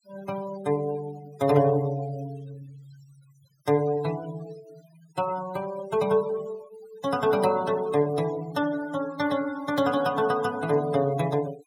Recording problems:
noise reduction artefacts; signal-to-artefact ratio 17 dB

